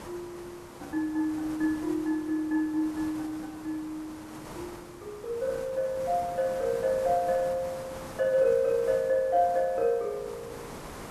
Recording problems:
hiss; SNR 16 dB

